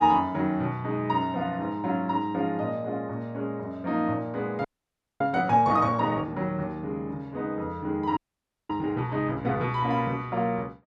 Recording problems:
frozen audio; at 4.5 s for 0.5 s and at 8 s for 0.5 s

